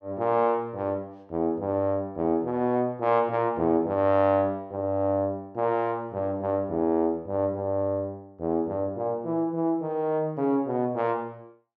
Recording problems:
none

